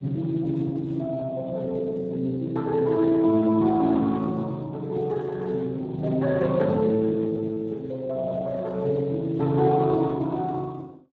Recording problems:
lossy codec; Speex, log-spectral distance 2 dB

